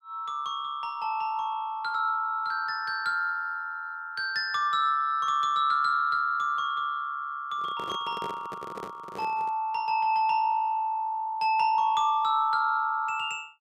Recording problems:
microphone handling noise; from 7.5 to 9.5 s; peak -7 dB vs average level

